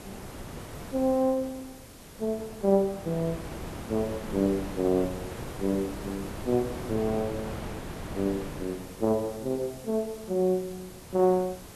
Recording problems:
hiss; slope +1 dB per octave, SNR 21 dB
wind noise; below 790 Hz, SNR 12 dB

